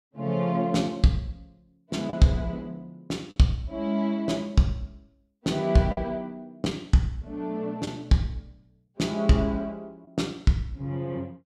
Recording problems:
lost packets; 1.8% of the sound replaced, filled with the last packet

